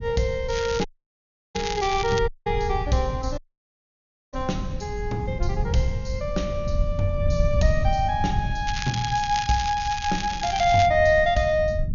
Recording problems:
treble missing; nothing above 6.9 kHz
low-frequency rumble; below 100 Hz, SNR 7 dB
crackle; until 2 s and from 8.5 to 11 s; loose cable, SNR 10 dB
dropout; at 1 s for 0.5 s, at 2.5 s and at 3.5 s for 1 s

